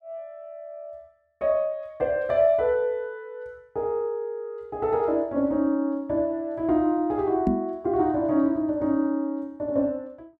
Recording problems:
microphone thump; at 7.5 s; peak +4 dB vs average level

